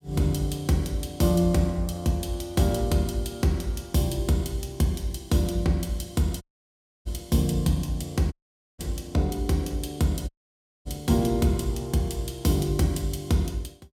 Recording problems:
dropout; at 6.5 s for 0.5 s, at 8.5 s and at 10 s for 0.5 s

